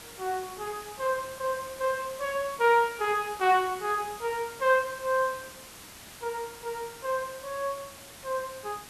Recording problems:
background hiss; slope -1 dB per octave, SNR 15 dB

